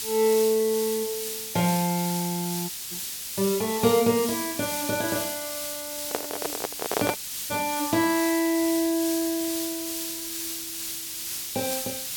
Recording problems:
background hiss; SNR 4 dB
audio cutting out; at 2.5 s and at 7 s
handling noise; from 6 to 7.5 s; peak +3 dB vs average level

